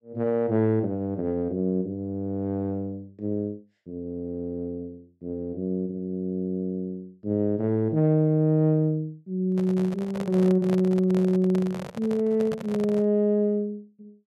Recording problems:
microphone handling noise; from 9.5 to 13 s; peak -5 dB vs average level

